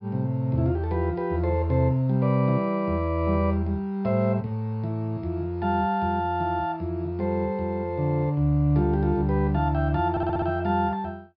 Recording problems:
low-pass filter; nothing above 5.5 kHz
audio stuttering; at 10 s

